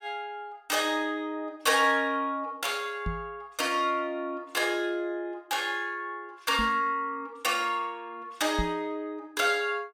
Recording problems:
microphone thump; at 3 s, at 6.5 s and at 8.5 s; peak +1 dB vs average level

